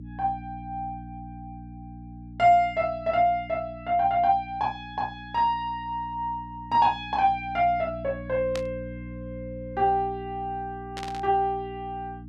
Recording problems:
electrical hum; 60 Hz, harmonics up to 300 Hz, SNR 15 dB
static burst; at 8.5 s and at 11 s; peak -6 dB vs average level

